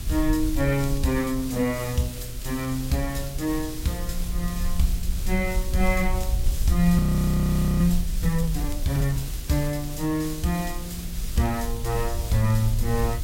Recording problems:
hum; 60 Hz, harmonics up to 1.1 kHz, SNR 26 dB
background hiss; SNR 12 dB
wind on the microphone; below 64 Hz, SNR 5 dB
crackle; vinyl, SNR 25 dB
audio freezing; at 7 s for 1 s

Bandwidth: 16 kHz